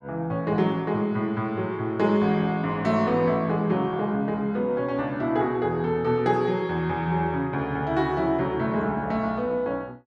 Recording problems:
none

